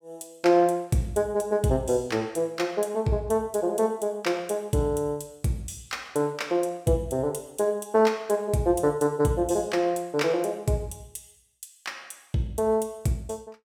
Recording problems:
none

